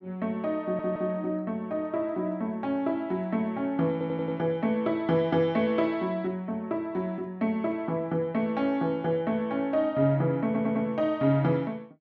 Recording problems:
audio stuttering; at 0.5 s, at 4 s and at 10 s

